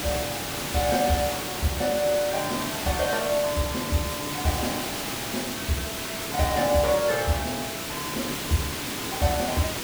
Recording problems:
hiss; slope -2 dB per octave, SNR 3 dB

